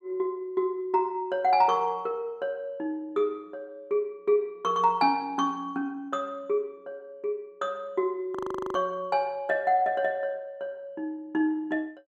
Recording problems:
frozen audio; at 8.5 s

